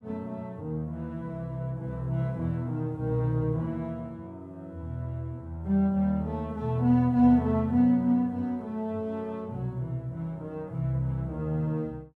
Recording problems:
none

